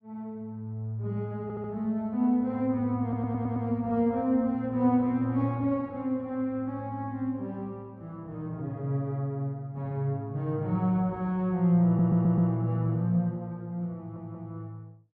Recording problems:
audio stuttering; 4 times, first at 1.5 s

